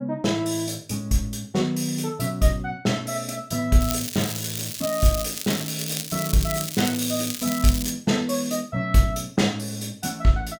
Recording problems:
crackle; from 4 to 8 s; loose cable, SNR 6 dB

